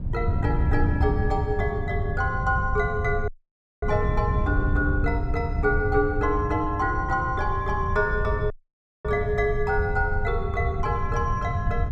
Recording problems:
low-frequency rumble; below 94 Hz, SNR 8 dB
wind noise; below 120 Hz, SNR 3 dB
dropout; at 3.5 s for 0.5 s and at 8.5 s for 0.5 s

